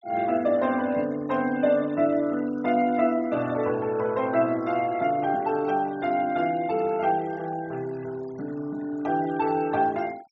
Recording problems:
treble missing; nothing above 8 kHz
noise reduction artefacts; signal-to-artefact ratio 22 dB

